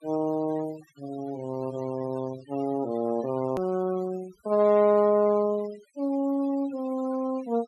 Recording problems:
noise reduction artefacts; signal-to-artefact ratio 21 dB
edit click; at 3.5 s

